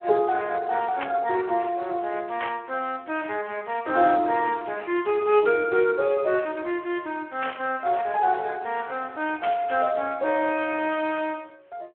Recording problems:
phone line; 320 Hz to 3.3 kHz, Speex
burst of static; 4 times, first at 1 s; peak -2 dB vs average level

